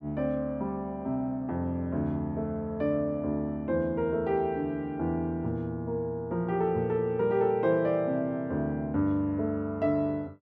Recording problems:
none

